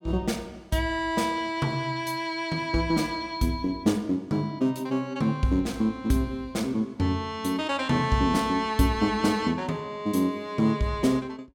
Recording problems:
none

